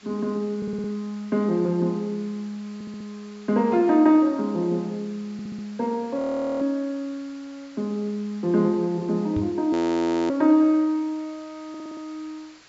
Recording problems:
treble missing; nothing above 8 kHz
background hiss; slope 0 dB per octave, SNR 26 dB
audio stuttering; 4 times, first at 0.5 s
frozen audio; at 6 s and at 9.5 s for 0.5 s
knock on the microphone; at 9.5 s; peak -1 dB vs average level

